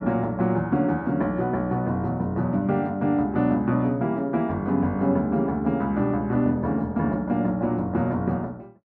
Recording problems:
none

